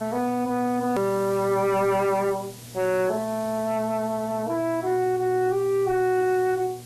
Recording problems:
codec artefacts; MP3, log-spectral distance 2 dB, nothing above 13.1 kHz
distorted audio; hard clipping, signal-to-distortion ratio 10 dB
electrical hum; 60 Hz, harmonics up to 720 Hz, SNR 19 dB
hiss; SNR 20 dB
edit click; at 1 s

